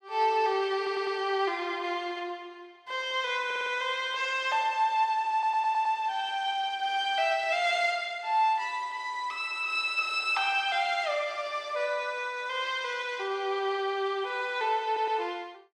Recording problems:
audio stuttering; 4 times, first at 1 s

